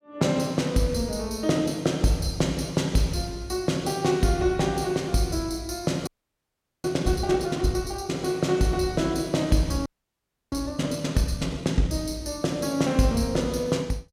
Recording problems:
frozen audio; at 6 s for 1 s and at 10 s for 0.5 s

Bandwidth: 16.5 kHz